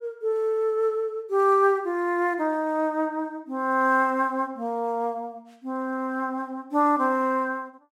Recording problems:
none

